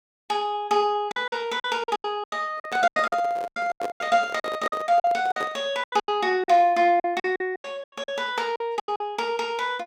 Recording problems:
packet loss; 16% of the sound replaced, filled with silence
handling noise; from 2.5 to 5.5 s; peak -3 dB vs average level

